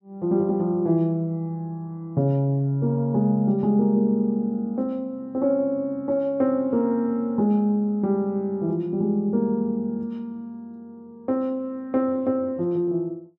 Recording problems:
none

